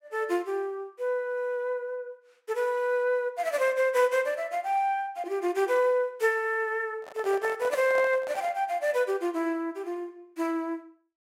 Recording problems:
microphone handling noise; from 7 to 8.5 s; peak -4 dB vs average level

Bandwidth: 16 kHz